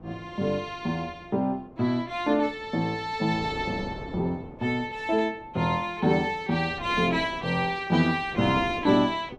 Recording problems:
wind noise; below 530 Hz, SNR 16 dB

